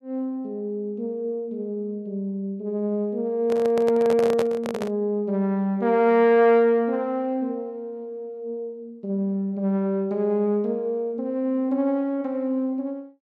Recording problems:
microphone handling noise; from 3.5 to 5 s; peak +1 dB vs average level

